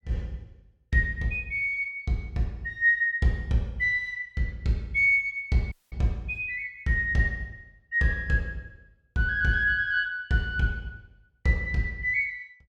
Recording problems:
audio cutting out; at 5.5 s

